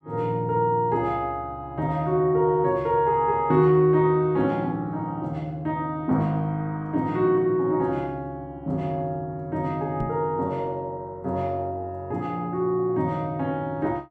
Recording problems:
knock on the microphone; at 10 s; peak -2 dB vs average level

